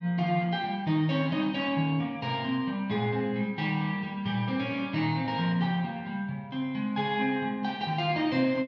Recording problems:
treble missing; nothing above 8 kHz

